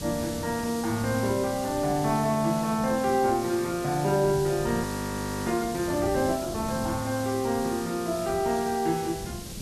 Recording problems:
hiss; SNR 12 dB
wind on the microphone; below 200 Hz, SNR 14 dB
frozen audio; at 5 s for 0.5 s

